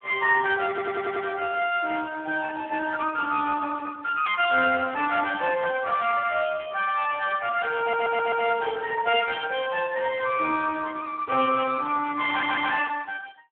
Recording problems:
phone line; 320 Hz to 3.4 kHz, Speex
stutter; at 0.5 s, at 8 s and at 12 s

